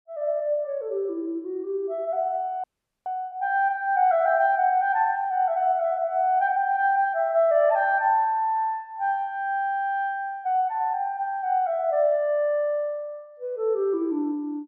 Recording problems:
frozen audio; at 2.5 s

